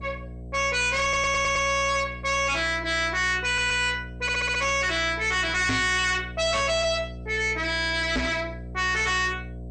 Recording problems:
lossy codec; MP2, log-spectral distance 4 dB, nothing above 8.5 kHz
distorted audio; soft clipping, signal-to-distortion ratio 6 dB
hum; 60 Hz, harmonics up to 720 Hz, SNR 15 dB
audio stuttering; at 1 s, at 3.5 s and at 4 s
microphone thump; at 5.5 s and at 8 s; peak +3 dB vs average level

